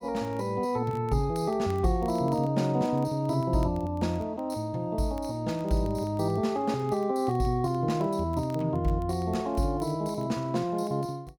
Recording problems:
crackling; vinyl, SNR 30 dB

